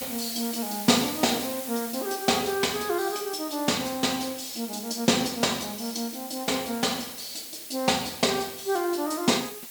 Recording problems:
background hiss; slope +2 dB per octave, SNR 9 dB

